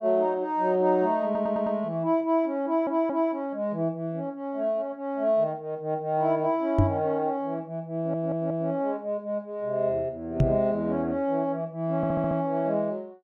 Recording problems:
stutter; 4 times, first at 1.5 s
microphone bump; at 7 s and at 10 s; peak +8 dB vs average level

